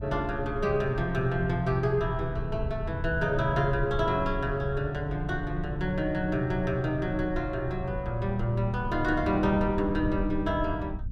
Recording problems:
rumble; below 94 Hz, SNR 9 dB

